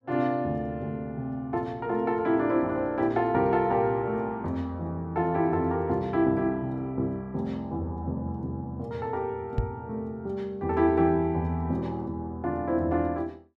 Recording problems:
microphone thump; at 9.5 s; peak +4 dB vs average level

